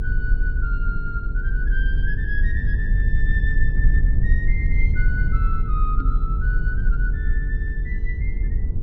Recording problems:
hum; 50 Hz, harmonics up to 450 Hz, SNR 12 dB
low-frequency rumble; below 56 Hz, SNR -9 dB
knock on the microphone; at 6 s; peak 0 dB vs average level

